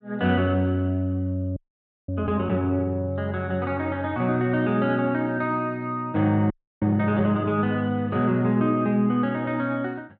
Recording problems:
audio freezing; at 1.5 s for 0.5 s and at 6.5 s

